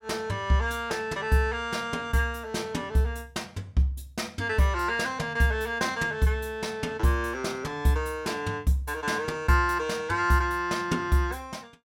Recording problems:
none

